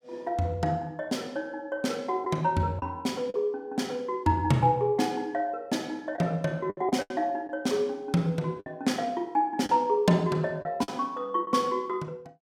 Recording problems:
lost packets; 4% of the sound replaced, filled with the last packet

